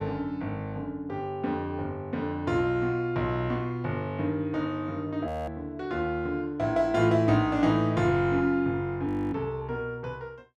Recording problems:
audio freezing; at 5.5 s and at 9 s

